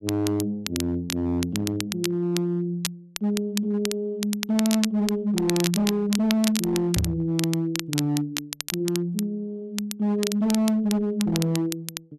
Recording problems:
distortion; hard clipping, signal-to-distortion ratio 11 dB
crackle; vinyl, SNR 8 dB
microphone bump; at 7 s; peak +4 dB vs average level

